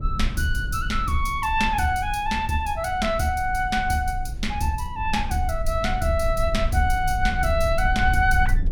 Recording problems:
low-frequency rumble; below 68 Hz, SNR 6 dB

